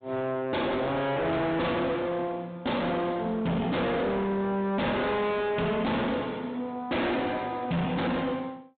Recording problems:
treble missing; nothing above 4 kHz
distorted audio; hard clipping, uneven, signal-to-distortion ratio 6 dB

